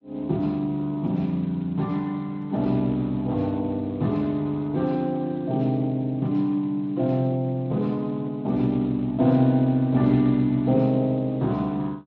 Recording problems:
codec artefacts; AAC, then Speex, log-spectral distance 2 dB

